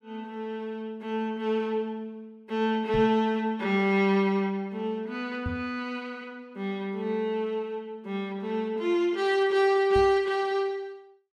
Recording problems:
microphone bump; at 3 s, at 5.5 s and at 10 s; peak -2 dB vs average level

